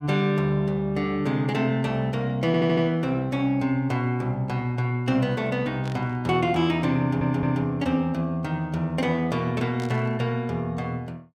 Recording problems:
stutter; at 2.5 s and at 7 s
burst of static; at 6 s and at 10 s; peak -13 dB vs average level

